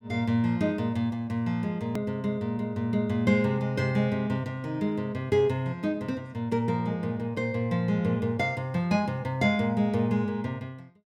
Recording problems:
edit click; at 2 s

